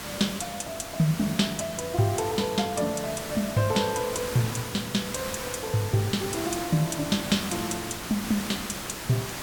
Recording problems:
background hiss; slope -2 dB per octave, SNR 7 dB

